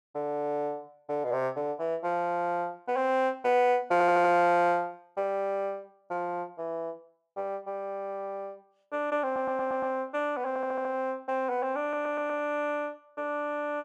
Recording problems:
audio stuttering; 4 times, first at 4 s

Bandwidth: 12.5 kHz